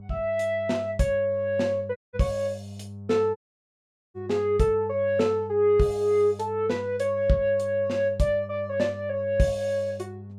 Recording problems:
electrical hum; 50 Hz, harmonics up to 600 Hz, SNR 15 dB
audio cutting out; at 2 s and at 3.5 s for 1 s

